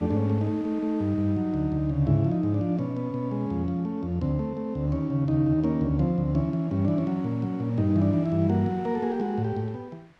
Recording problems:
wind on the microphone; below 2.3 kHz, SNR 29 dB

